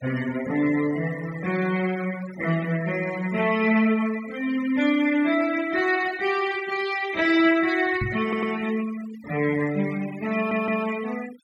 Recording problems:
denoising artefacts; signal-to-artefact ratio 17 dB
microphone thump; at 8 s; peak -1 dB vs average level
audio stuttering; at 8 s and at 10 s

